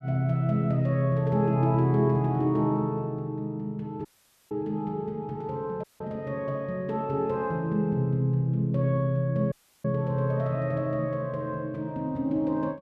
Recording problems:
dropout; at 4 s, at 6 s and at 9.5 s

